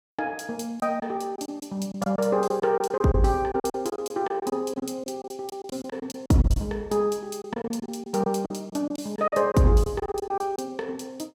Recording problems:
packet loss; 12% of the sound replaced, filled with silence

